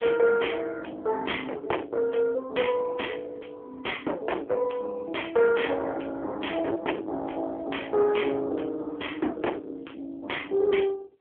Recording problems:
phone line; 260 Hz to 3.3 kHz, AMR-NB
distortion; soft clipping, signal-to-distortion ratio 7 dB

